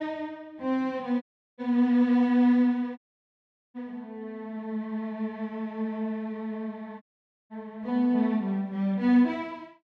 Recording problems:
dropout; at 1 s, at 3 s for 1 s and at 7 s

